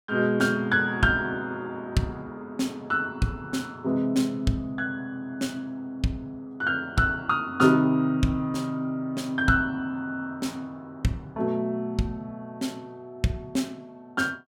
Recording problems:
none

